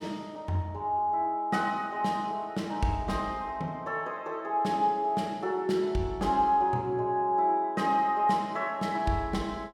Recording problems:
none

